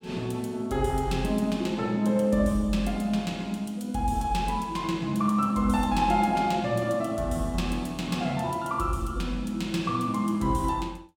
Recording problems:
none

